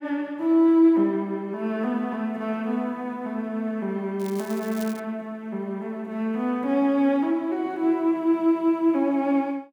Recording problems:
crackle; at 4 s; loose cable, SNR 20 dB

